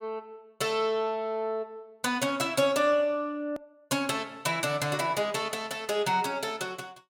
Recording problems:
edit click; at 3.5 s

